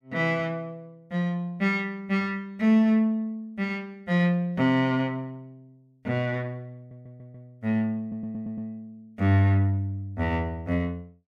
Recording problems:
stutter; at 7 s and at 8 s

